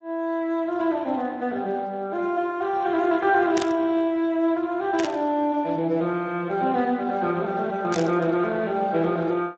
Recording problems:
codec artefacts; Speex, log-spectral distance 2 dB
burst of static; at 3.5 s, at 5 s and at 8 s; peak -3 dB vs average level

